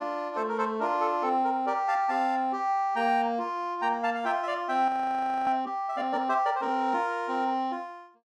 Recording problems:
frozen audio; at 5 s for 0.5 s

